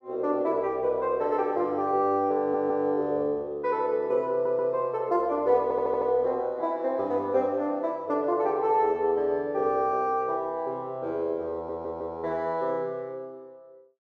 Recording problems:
audio stuttering; 4 times, first at 2.5 s

